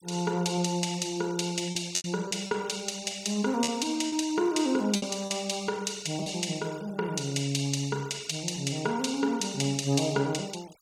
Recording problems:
denoising artefacts; signal-to-artefact ratio 21 dB
lost packets; 4% of the sound replaced, filled with repeated pitch periods

